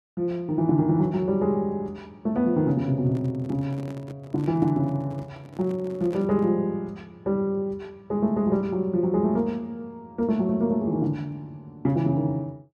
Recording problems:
handling noise; from 3 to 6.5 s; peak -10 dB vs average level

